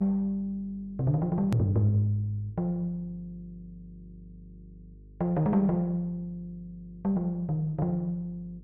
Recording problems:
hum; 50 Hz, harmonics up to 450 Hz, SNR 23 dB
click at an edit; at 1.5 s

